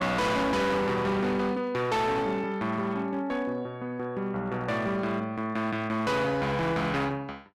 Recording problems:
distorted audio; hard clipping, signal-to-distortion ratio 7 dB

